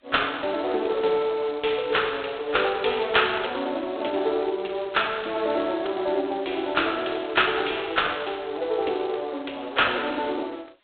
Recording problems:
telephone audio; 300 Hz to 3.9 kHz, G.726

